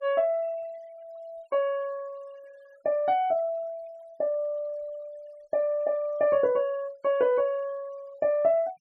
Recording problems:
noise reduction artefacts; signal-to-artefact ratio 28 dB

